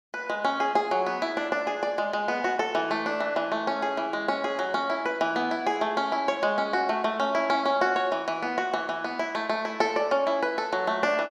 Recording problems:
none

